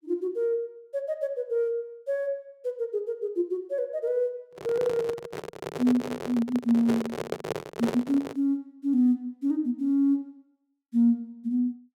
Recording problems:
handling noise; from 4.5 to 8.5 s; peak +1 dB vs average level

